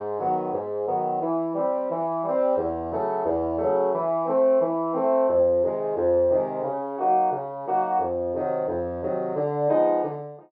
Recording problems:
treble missing; nothing above 5.5 kHz

